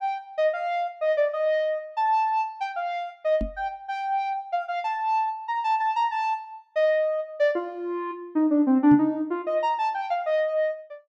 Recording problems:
microphone bump; at 3.5 s and at 9 s; peak -2 dB vs average level

